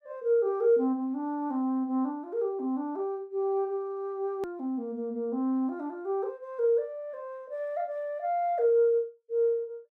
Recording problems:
edit click; at 4.5 s

